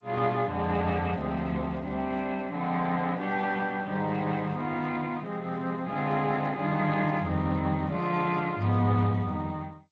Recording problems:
lossy codec; Speex, then G.722, log-spectral distance 3 dB

